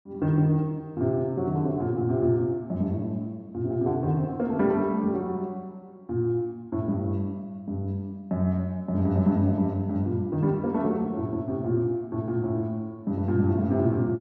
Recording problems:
none

